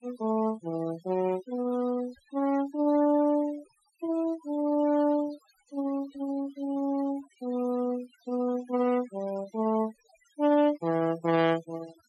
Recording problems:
noise reduction artefacts; signal-to-artefact ratio 19 dB

